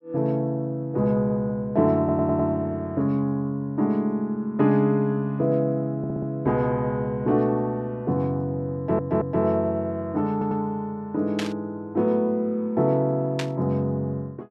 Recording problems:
audio stuttering; 4 times, first at 2 s
burst of static; at 11 s and at 13 s; peak -2 dB vs average level

